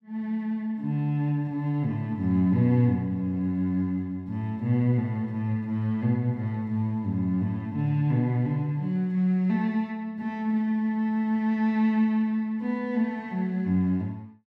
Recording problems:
none

